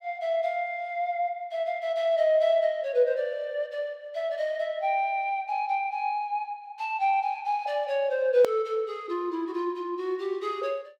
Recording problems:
edit click; at 8.5 s

